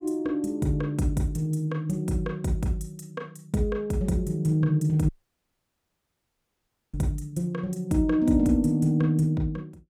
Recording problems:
dropout; at 5 s for 2 s

